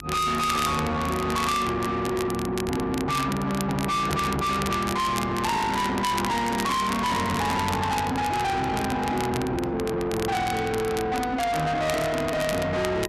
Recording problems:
distortion; soft clipping, signal-to-distortion ratio 6 dB
hum; 50 Hz, harmonics up to 400 Hz, SNR 21 dB
crackle; vinyl, SNR 11 dB

